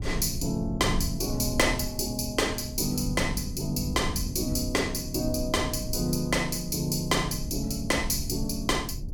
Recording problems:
low-frequency rumble; below 120 Hz, SNR 9 dB

